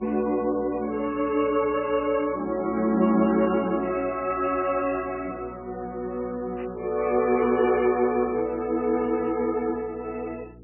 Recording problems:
codec artefacts; MP3, log-spectral distance 3 dB, nothing above 2.4 kHz
hum; 60 Hz, harmonics up to 480 Hz, SNR 22 dB
static burst; 4 times, first at 1.5 s; peak -13 dB vs average level

